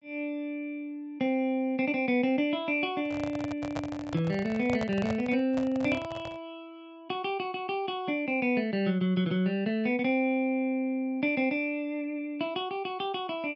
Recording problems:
treble cut off; nothing above 7.8 kHz
microphone handling noise; from 3 to 6.5 s; peak -1 dB vs average level

